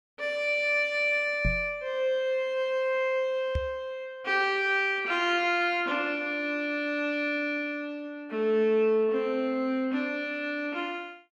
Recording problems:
microphone bump; at 1.5 s and at 3.5 s; peak +1 dB vs average level

